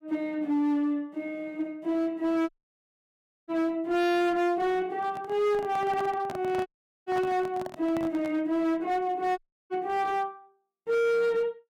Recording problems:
distortion; hard clipping, signal-to-distortion ratio 7 dB
audio cutting out; at 2.5 s for 1 s, at 6.5 s and at 9.5 s
handling noise; from 5 to 8.5 s; peak -6 dB vs average level

